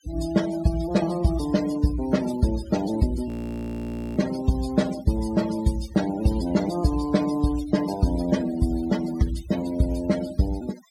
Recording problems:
noise reduction artefacts; signal-to-artefact ratio 16 dB
frozen audio; at 3.5 s for 1 s

